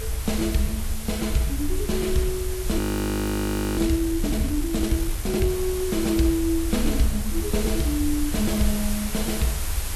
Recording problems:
lossy codec; Vorbis, log-spectral distance 8 dB
hiss; slope -1 dB per octave, SNR 8 dB
rumble; below 74 Hz, SNR 6 dB
audio freezing; at 3 s for 1 s

